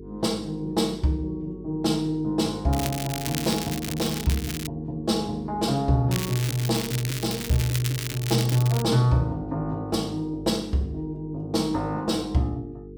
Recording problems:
electrical hum; 50 Hz, harmonics up to 450 Hz, SNR 15 dB
crackling; from 2.5 to 4.5 s and from 6 to 9 s; loose cable, SNR 7 dB

